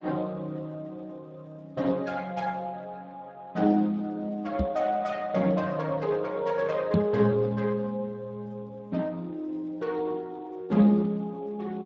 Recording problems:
codec artefacts; Speex, log-spectral distance 3 dB
microphone bump; at 4.5 s and at 7 s; peak +7 dB vs average level

